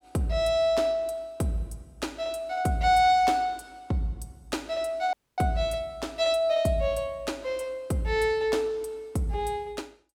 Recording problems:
dropout; at 5 s

